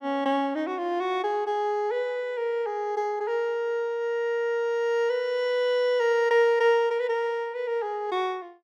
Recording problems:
none

